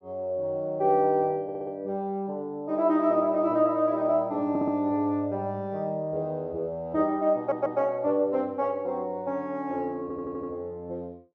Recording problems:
stutter; 4 times, first at 1.5 s

